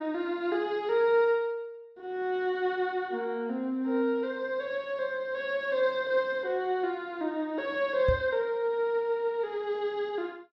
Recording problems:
knock on the microphone; at 8 s; peak +3 dB vs average level

